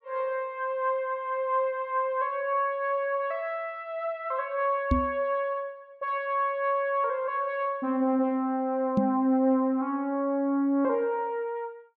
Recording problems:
knock on the microphone; at 5 s and at 9 s; peak +7 dB vs average level

